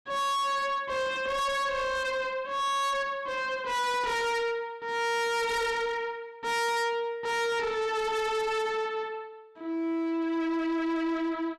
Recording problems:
distorted audio; soft clipping, signal-to-distortion ratio 6 dB

